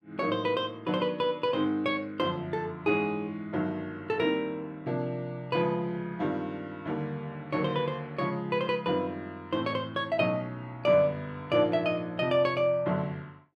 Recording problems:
none

